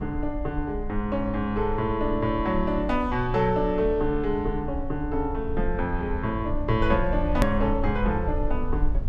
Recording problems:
low-frequency rumble; below 60 Hz, strongest tone 20 Hz, SNR 7 dB
hard cut with a click; at 7.5 s

